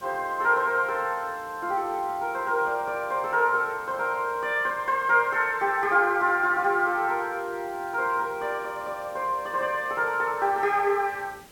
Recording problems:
hiss; slope -3 dB per octave, SNR 24 dB

